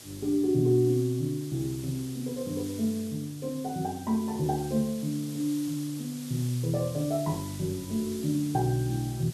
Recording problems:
hum; 60 Hz, harmonics up to 1.8 kHz, SNR 29 dB
hiss; slope +1 dB per octave, SNR 15 dB

